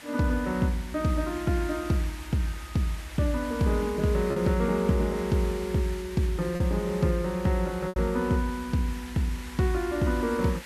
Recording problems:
background hiss; SNR 16 dB
lost packets; 1.5% of the sound replaced, filled with repeated pitch periods

